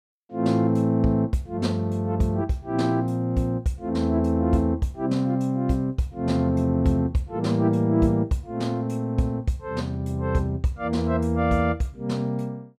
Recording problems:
none

